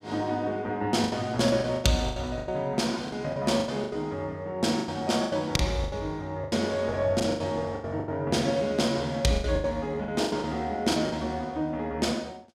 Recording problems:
packet loss; 14% of the sound replaced, filled with the last packet

